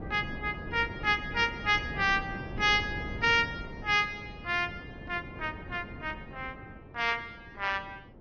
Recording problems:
treble cut off; nothing above 5.3 kHz
codec artefacts; AAC, log-spectral distance 2 dB
wind on the microphone; below 360 Hz, SNR 13 dB

